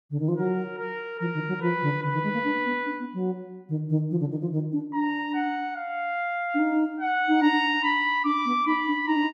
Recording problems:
none

